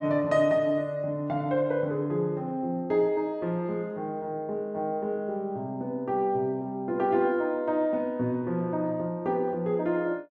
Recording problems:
none

